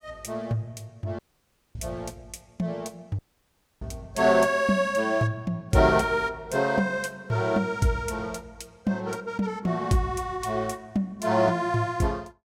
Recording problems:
dropout; at 1 s for 0.5 s and at 3 s for 0.5 s

